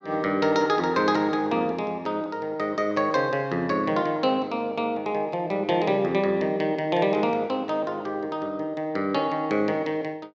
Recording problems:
none

